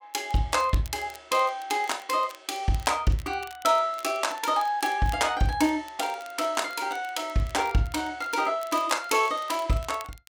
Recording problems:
crackling; vinyl, SNR 22 dB

